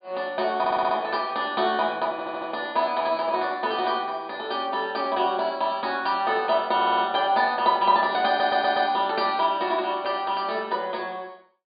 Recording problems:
treble cut off; nothing above 4.7 kHz
stutter; 4 times, first at 0.5 s

